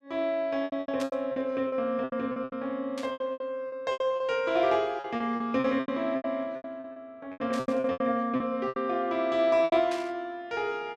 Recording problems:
packet loss; 17% of the sound replaced, filled with repeated pitch periods
static burst; 4 times, first at 1 s; peak -7 dB vs average level

